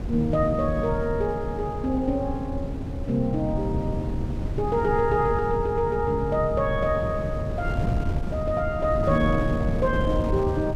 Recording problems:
wind on the microphone; below 180 Hz, SNR 4 dB

